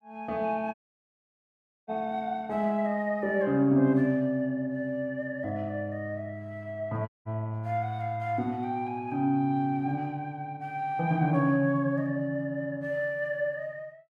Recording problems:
dropout; at 0.5 s for 1 s and at 7 s

